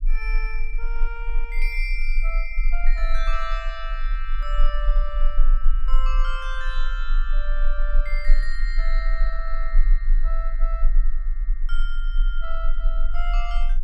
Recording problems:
low-frequency rumble; below 32 Hz, strongest tone 20 Hz, SNR -8 dB

